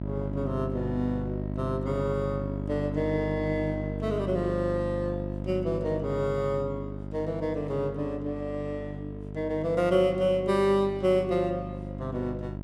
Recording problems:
hum; 50 Hz, harmonics up to 1 kHz, SNR 6 dB

